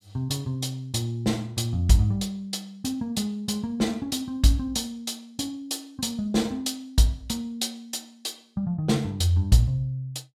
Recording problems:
none

